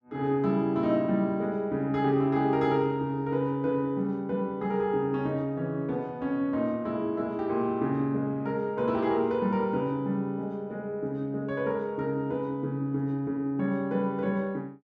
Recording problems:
none

